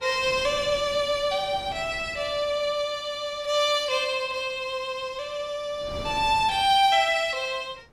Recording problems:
wind noise; below 550 Hz, SNR 19 dB

